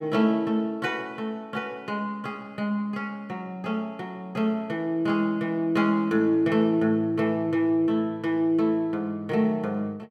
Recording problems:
none

